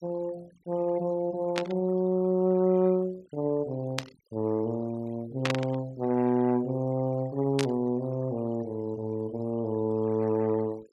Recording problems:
noise reduction artefacts; signal-to-artefact ratio 24 dB
static burst; 4 times, first at 1.5 s; peak +4 dB vs average level

